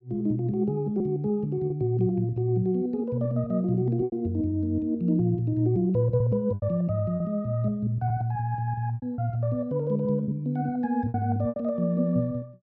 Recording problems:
lost packets; 5% of the sound replaced, filled with repeated pitch periods

